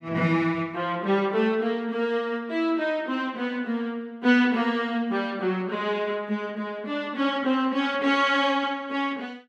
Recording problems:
none

